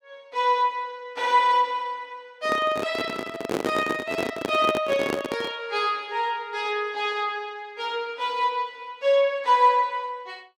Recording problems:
microphone handling noise; from 2.5 to 5.5 s; peak +2 dB vs average level

